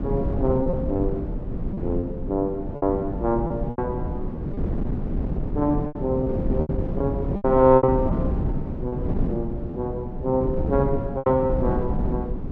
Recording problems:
wind on the microphone; below 240 Hz, SNR 3 dB
lost packets; 8% of the sound replaced, filled with repeated pitch periods

